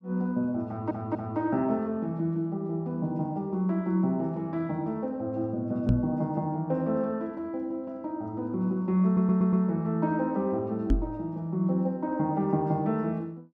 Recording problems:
stutter; at 0.5 s and at 9 s
microphone thump; at 6 s and at 11 s; peak +8 dB vs average level

